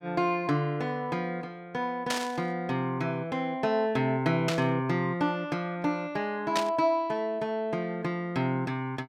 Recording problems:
static burst; at 2 s, at 4.5 s and at 6.5 s; peak +3 dB vs average level

